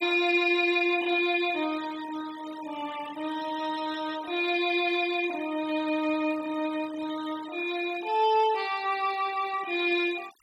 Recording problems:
denoising artefacts; signal-to-artefact ratio 18 dB

